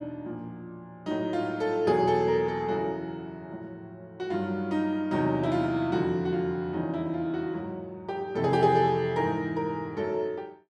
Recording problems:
none

